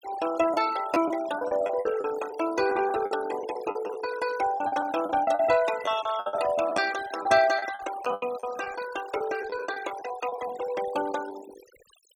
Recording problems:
denoising artefacts; signal-to-artefact ratio 13 dB
lost packets; 10% of the sound replaced, filled with the last packet

